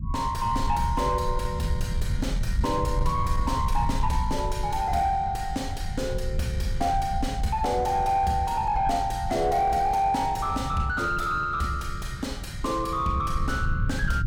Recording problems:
distorted audio; soft clipping, signal-to-distortion ratio 10 dB
low-frequency rumble; below 98 Hz, SNR 4 dB

